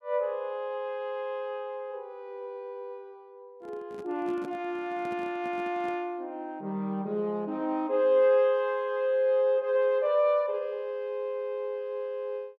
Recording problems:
microphone handling noise; from 3.5 to 6 s; peak -9 dB vs average level

